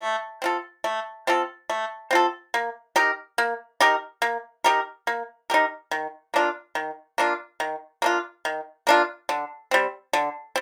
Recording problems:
none

